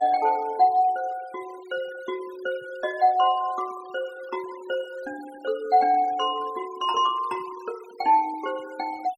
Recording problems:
noise reduction artefacts; signal-to-artefact ratio 23 dB

